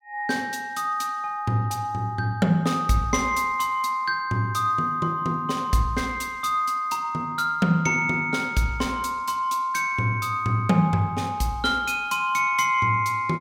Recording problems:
none

